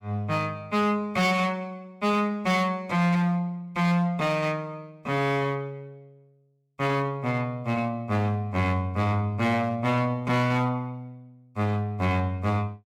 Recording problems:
distorted audio; hard clipping, signal-to-distortion ratio 11 dB

